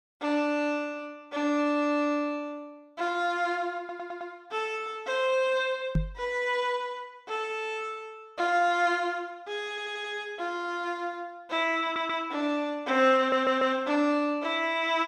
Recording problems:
stutter; 4 times, first at 4 s
knock on the microphone; at 6 s; peak +5 dB vs average level

